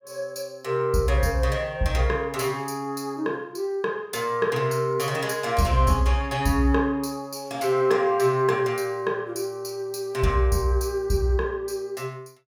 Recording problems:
none

